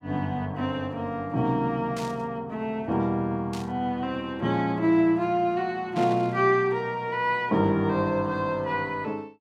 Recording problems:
static burst; at 2 s, at 3.5 s and at 6 s; peak -9 dB vs average level

